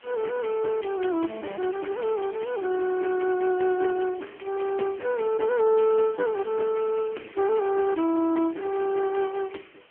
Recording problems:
phone line; 240 Hz to 2.1 kHz, AMR-NB
hiss; SNR 27 dB

